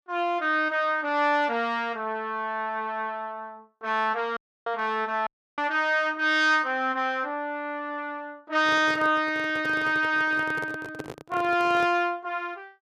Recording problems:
dropout; at 4.5 s and at 5.5 s
microphone handling noise; from 8.5 to 12 s; peak -6 dB vs average level

